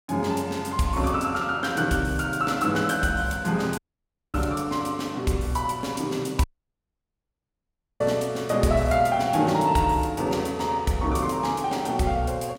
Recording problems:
dropout; at 4 s for 0.5 s and at 6.5 s for 1.5 s

